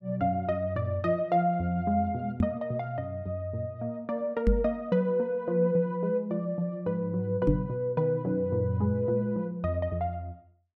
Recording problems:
knock on the microphone; at 2.5 s, at 4.5 s and at 7.5 s; peak +7 dB vs average level

